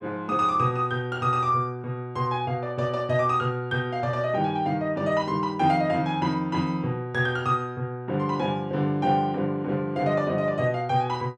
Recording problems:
none

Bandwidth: 12 kHz